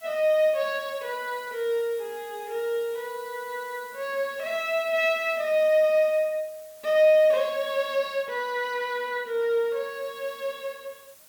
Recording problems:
hiss; slope 0 dB per octave, SNR 23 dB

